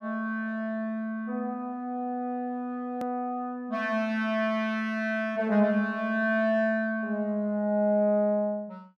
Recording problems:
edit click; at 3 s

